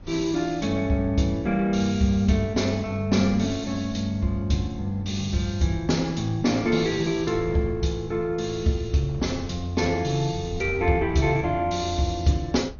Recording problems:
lossy compression; MP2, log-spectral distance 4 dB, nothing above 6.7 kHz
wind on the microphone; below 140 Hz, SNR 17 dB

